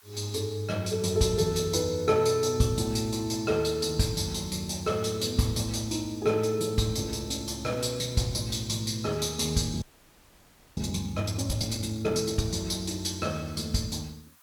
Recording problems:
hiss; SNR 27 dB
frozen audio; at 10 s for 1 s

